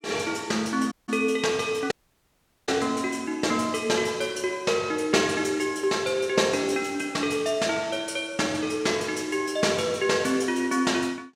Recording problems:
audio cutting out; at 1 s and at 2 s for 1 s

